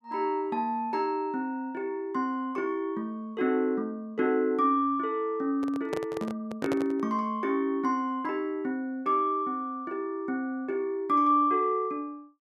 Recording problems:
handling noise; from 5.5 to 7 s; peak 0 dB vs average level

